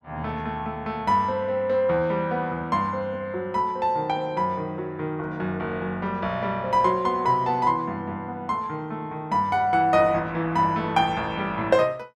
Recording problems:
none

